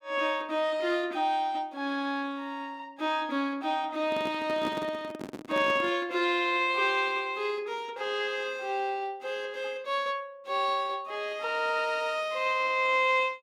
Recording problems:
microphone handling noise; from 4 to 6 s; peak -2 dB vs average level

